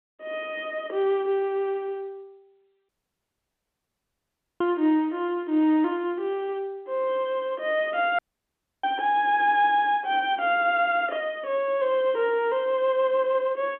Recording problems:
phone line; 220 Hz to 3.4 kHz, G.711
dropout; at 3 s for 1.5 s and at 8 s for 0.5 s

